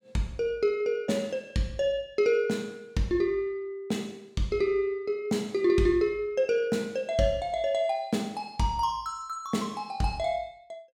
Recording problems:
none

